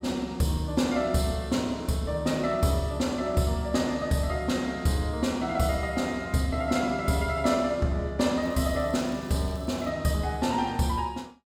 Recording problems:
crackle; from 8.5 to 10 s; loose cable, SNR 27 dB

